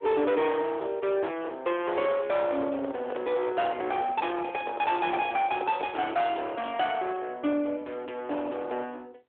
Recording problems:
telephone audio; 260 Hz to 3.5 kHz, AMR-NB
distortion; hard clipping, signal-to-distortion ratio 8 dB
microphone handling noise; from 2.5 to 6 s; peak -1 dB vs average level

